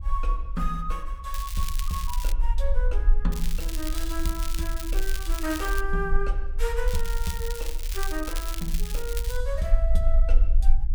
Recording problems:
low-frequency rumble; below 42 Hz, strongest tone 18 Hz, SNR -4 dB
crackling; at 1.5 s, from 3.5 to 6 s and from 7 to 9.5 s; loose cable, SNR 4 dB

